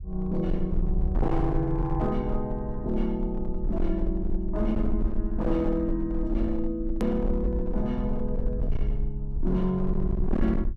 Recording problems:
distorted audio; hard clipping, signal-to-distortion ratio 10 dB
low-frequency rumble; below 52 Hz, SNR 3 dB
edit click; at 7 s

